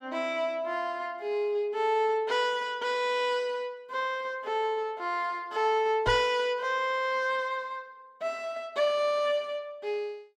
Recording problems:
microphone bump; at 6 s; peak -3 dB vs average level

